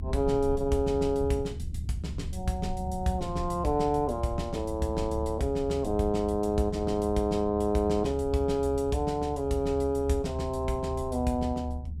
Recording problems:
rumble; below 78 Hz, strongest tone 74 Hz, SNR 9 dB

